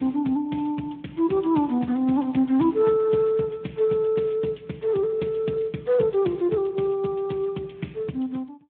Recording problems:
phone line; 150 Hz to 3.5 kHz, Speex

